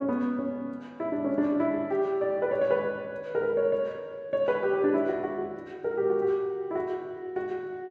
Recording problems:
none

